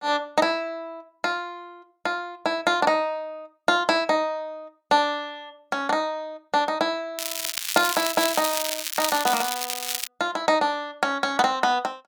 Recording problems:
crackle; from 7 to 10 s; loose cable, SNR 3 dB

